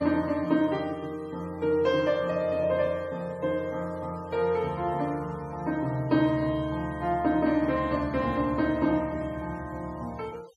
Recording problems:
denoising artefacts; signal-to-artefact ratio 26 dB

